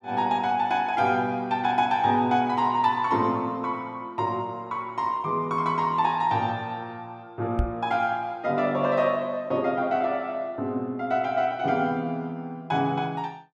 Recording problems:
microphone bump; at 7.5 s; peak +3 dB vs average level

